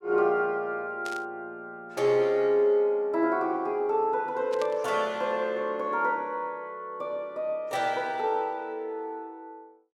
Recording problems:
static burst; at 1 s and at 4.5 s; peak -8 dB vs average level

